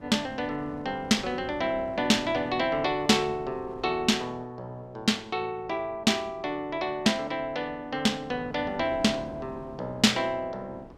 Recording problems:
wind noise; below 540 Hz, SNR 20 dB

